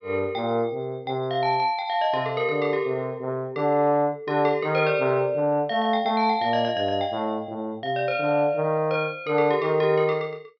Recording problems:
low-pass filter; nothing above 5.5 kHz

